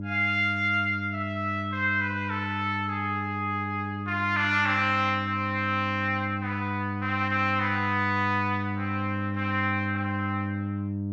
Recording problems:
hum; 50 Hz, harmonics up to 600 Hz, SNR 5 dB

